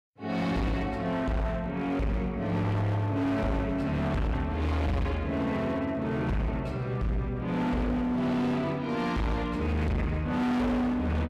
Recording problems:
distortion; hard clipping, signal-to-distortion ratio 6 dB

